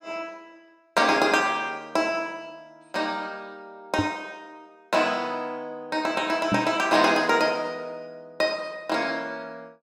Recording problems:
microphone thump; at 4 s and at 6.5 s; peak +3 dB vs average level

